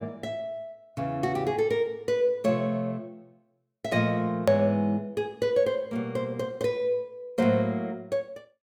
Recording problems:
hard cut with a click; at 4.5 s

